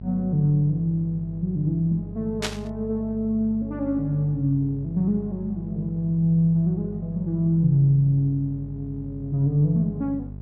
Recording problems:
hum; 50 Hz, harmonics up to 450 Hz, SNR 14 dB
static burst; at 2.5 s; peak +1 dB vs average level

